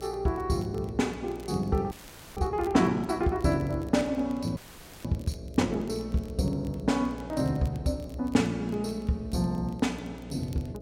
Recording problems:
hum; 60 Hz, harmonics up to 660 Hz, SNR 15 dB
crackling; vinyl, SNR 28 dB
frozen audio; at 2 s and at 4.5 s

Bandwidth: 16 kHz